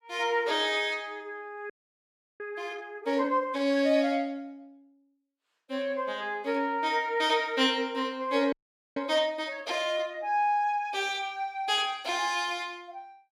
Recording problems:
audio freezing; at 1.5 s for 0.5 s and at 8.5 s

